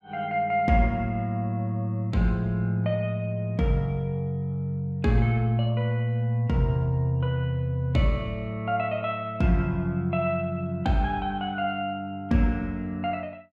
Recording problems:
none

